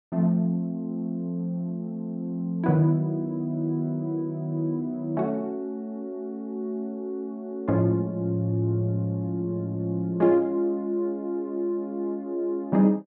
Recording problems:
none

